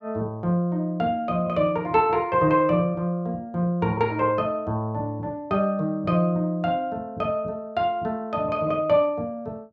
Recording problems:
none

